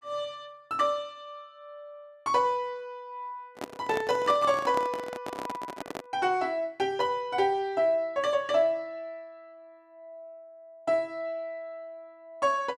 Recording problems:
handling noise; from 3.5 to 6 s; peak -2 dB vs average level

